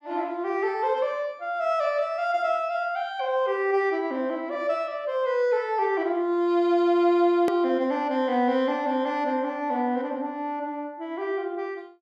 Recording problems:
hard cut with a click; at 7.5 s

